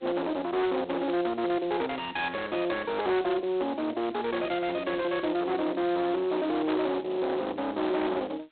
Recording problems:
telephone audio; 900 Hz to 2.5 kHz, G.726
distorted audio; soft clipping, signal-to-distortion ratio 8 dB

